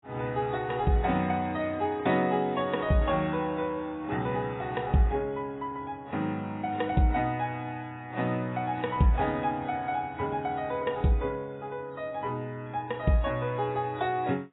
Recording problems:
lossy codec; AAC, log-spectral distance 2 dB, nothing above 3.6 kHz

